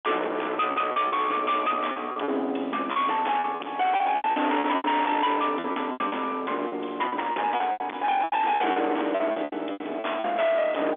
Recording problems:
phone line; 990 Hz to 3.6 kHz, G.711
distorted audio; hard clipping, signal-to-distortion ratio 6 dB
packet loss; 14% of the sound replaced, filled with repeated pitch periods

